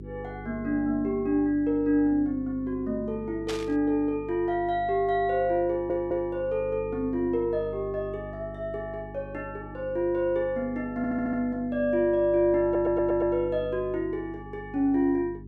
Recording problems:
hum; 50 Hz, harmonics up to 400 Hz, SNR 15 dB
burst of static; at 3.5 s; peak -4 dB vs average level
stutter; at 5.5 s, at 11 s and at 13 s

